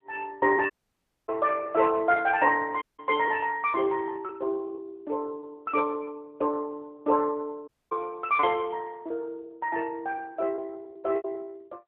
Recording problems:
phone line; 300 Hz to 3.5 kHz, AMR-NB
lost packets; 6% of the sound replaced, filled with repeated pitch periods
dropout; at 0.5 s for 0.5 s, at 3 s and at 7.5 s

